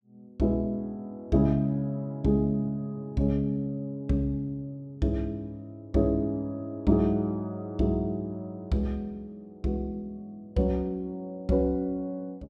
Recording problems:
none

